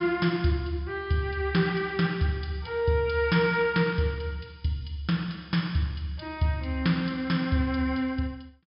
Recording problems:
treble cut off; nothing above 5.5 kHz

